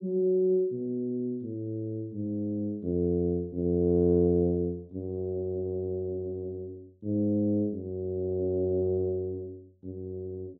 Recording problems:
none

